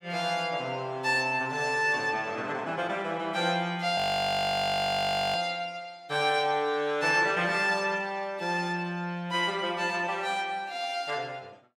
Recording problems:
audio freezing; at 4 s for 1.5 s

